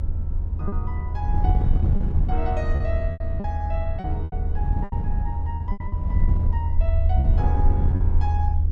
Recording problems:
rumble; below 80 Hz, SNR -8 dB
wind on the microphone; below 98 Hz, SNR -5 dB
lost packets; 8% of the sound replaced, filled with repeated pitch periods

